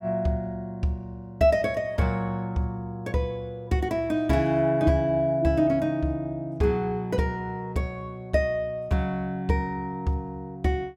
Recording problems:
none

